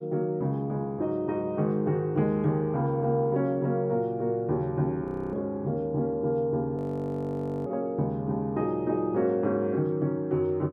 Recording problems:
frozen audio; at 5 s and at 7 s for 1 s

